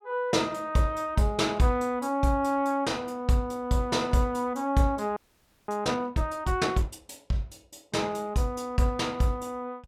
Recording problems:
audio freezing; at 5 s for 0.5 s

